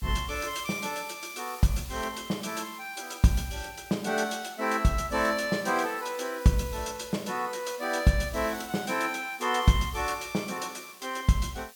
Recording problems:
background hiss; slope +3 dB per octave, SNR 17 dB

